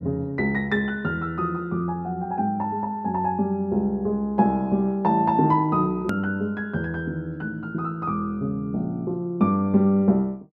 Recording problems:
click at an edit; at 6 s

